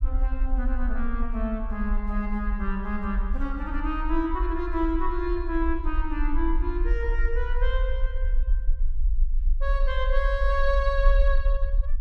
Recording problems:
rumble; below 46 Hz, SNR -1 dB

